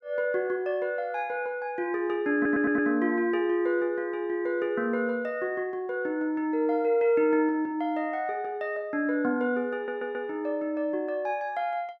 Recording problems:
stutter; at 2.5 s and at 9.5 s

